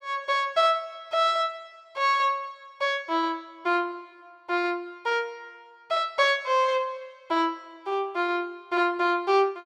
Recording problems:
none

